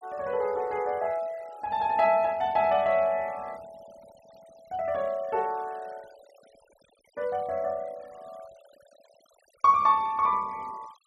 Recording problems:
denoising artefacts; signal-to-artefact ratio 27 dB

